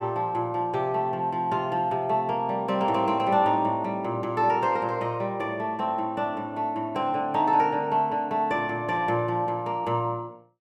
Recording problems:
none

